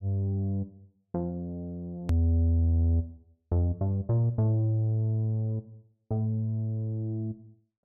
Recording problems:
click at an edit; at 2 s

